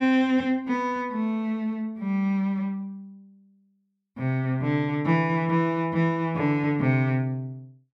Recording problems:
none

